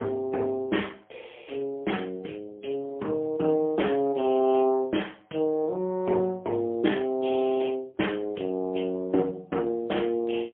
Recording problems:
phone line; 220 Hz to 3.3 kHz, AMR-NB, then MP3

